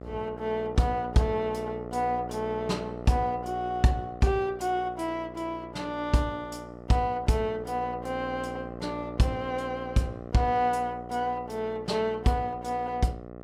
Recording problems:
hum; 60 Hz, harmonics up to 1.4 kHz, SNR 12 dB

